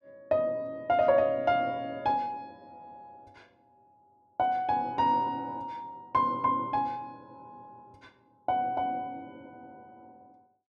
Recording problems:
none

